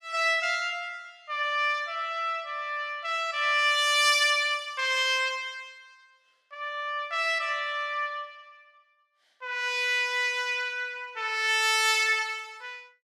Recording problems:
none

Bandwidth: 14.5 kHz